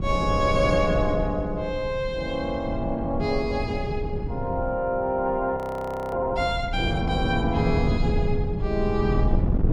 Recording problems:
wind on the microphone; below 160 Hz, SNR 3 dB
frozen audio; at 5.5 s for 0.5 s

